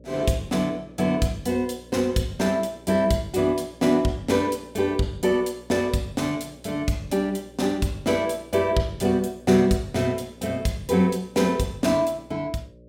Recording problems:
hum; 60 Hz, harmonics up to 600 Hz, SNR 25 dB

